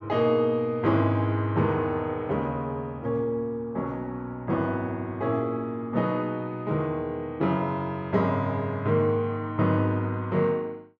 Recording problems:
none

